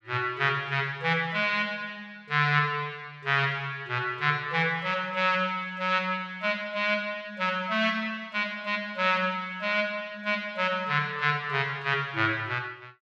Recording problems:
none

